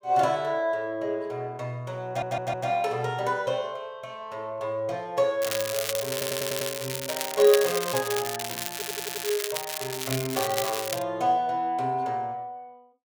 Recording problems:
stutter; at 2 s, at 6 s and at 8.5 s
crackling; from 5.5 to 11 s; loose cable, SNR 3 dB

